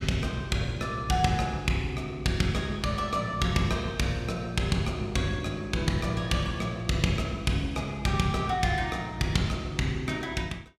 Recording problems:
none

